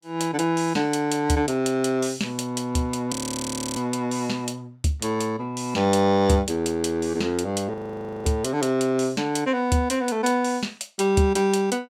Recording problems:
audio freezing; at 3 s for 0.5 s and at 7.5 s for 0.5 s

